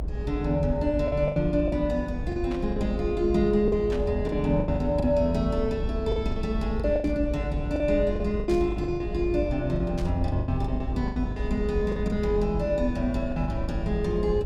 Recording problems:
low-frequency rumble; below 82 Hz, SNR 6 dB
lost packets; 11% of the sound replaced, filled with the last packet
static burst; 5 times, first at 2.5 s; peak -10 dB vs average level

